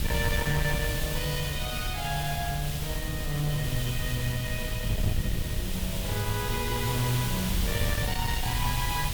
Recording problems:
distorted audio; soft clipping, signal-to-distortion ratio 11 dB
hiss; SNR 4 dB
wind on the microphone; below 130 Hz, SNR 3 dB

